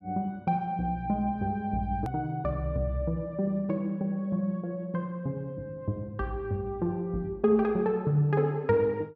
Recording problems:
edit click; at 2 s

